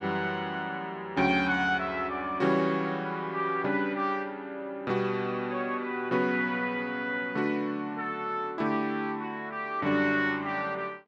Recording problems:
none

